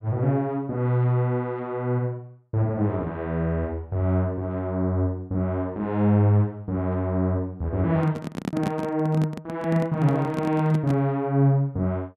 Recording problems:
microphone handling noise; from 8 to 11 s; peak +1 dB vs average level

